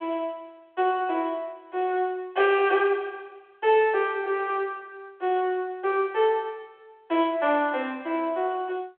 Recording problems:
phone line; 340 Hz to 3.6 kHz, G.726

